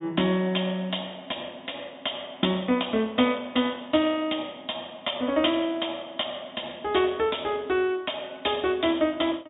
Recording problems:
treble cut off; nothing above 4 kHz

